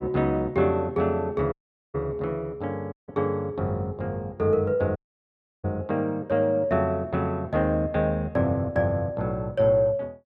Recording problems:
dropout; at 1.5 s, at 3 s and at 5 s for 0.5 s

